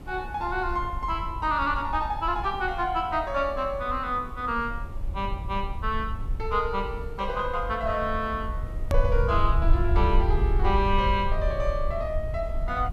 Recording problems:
background hiss; slope -8 dB per octave, SNR 19 dB
low-frequency rumble; below 64 Hz, SNR 4 dB
edit click; at 9 s

